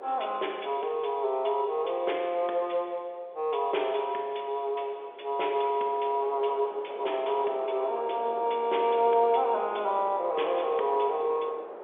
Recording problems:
telephone audio; 320 Hz to 3.6 kHz, G.711
wind on the microphone; below 780 Hz, SNR 13 dB

